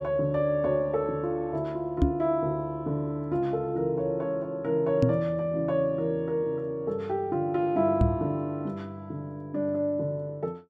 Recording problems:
knock on the microphone; at 2 s, at 5 s and at 8 s; peak +8 dB vs average level

